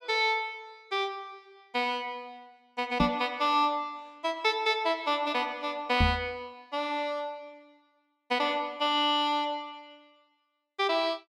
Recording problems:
microphone thump; at 3 s and at 6 s; peak +6 dB vs average level

